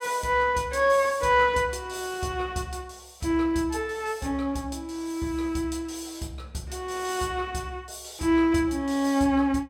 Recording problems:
none

